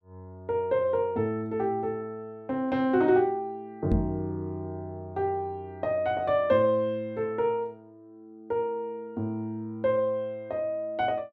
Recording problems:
knock on the microphone; at 4 s; peak +6 dB vs average level

